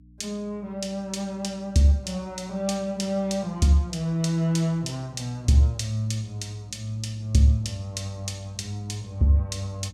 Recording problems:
electrical hum; 60 Hz, harmonics up to 300 Hz, SNR 26 dB

